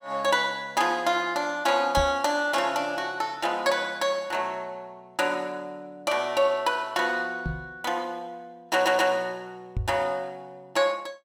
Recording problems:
microphone thump; at 2 s, at 7.5 s and at 10 s; peak 0 dB vs average level
stutter; at 8.5 s

